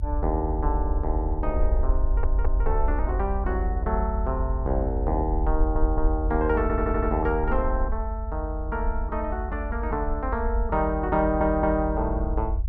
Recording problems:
low-frequency rumble; below 66 Hz, strongest tone 48 Hz, SNR 1 dB
audio stuttering; 4 times, first at 2 s

